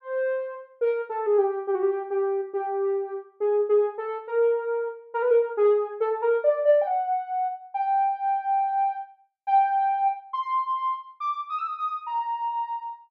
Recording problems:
none

